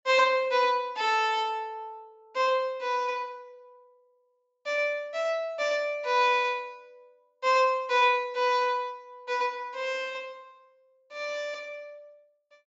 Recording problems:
low-pass filter; nothing above 8 kHz

